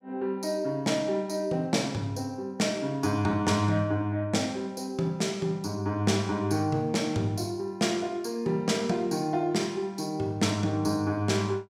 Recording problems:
none

